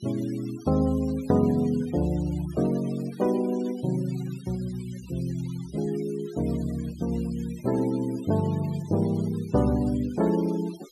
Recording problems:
denoising artefacts; signal-to-artefact ratio 21 dB

